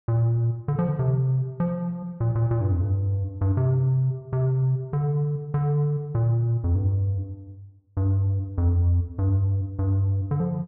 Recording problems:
none

